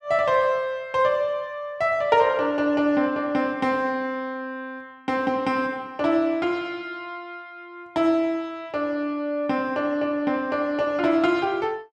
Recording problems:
none

